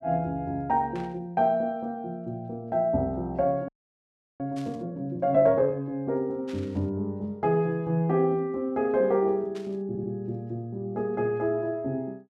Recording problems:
burst of static; 4 times, first at 1 s; peak -14 dB vs average level
frozen audio; at 3.5 s for 0.5 s
audio stuttering; at 10 s

